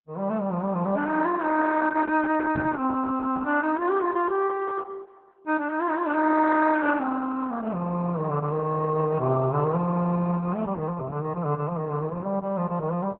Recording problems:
lossy codec; Opus, log-spectral distance 3 dB, nothing above 4 kHz
microphone thump; at 2.5 s; peak +4 dB vs average level

